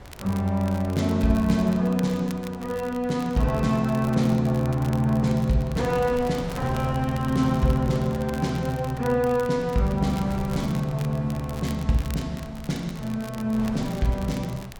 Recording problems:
wind noise; below 690 Hz, SNR 18 dB
crackle; vinyl, SNR 21 dB

